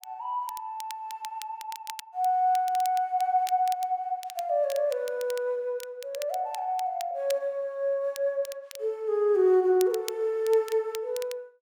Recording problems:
crackling; vinyl, SNR 17 dB

